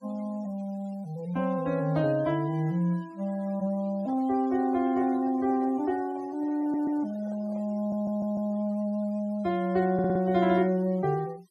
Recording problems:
denoising artefacts; signal-to-artefact ratio 25 dB
handling noise; from 4 to 7.5 s; peak -14 dB vs average level
audio stuttering; at 6.5 s, at 8 s and at 10 s

